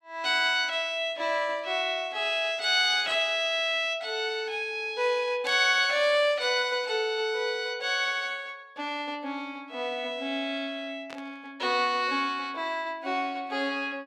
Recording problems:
static burst; at 3 s, at 5.5 s and at 11 s; peak -11 dB vs average level

